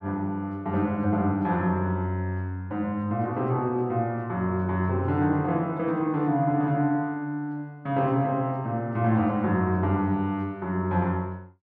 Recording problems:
none

